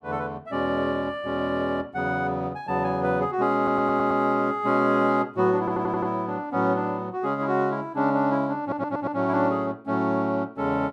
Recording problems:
audio stuttering; at 3.5 s, at 5.5 s and at 8.5 s

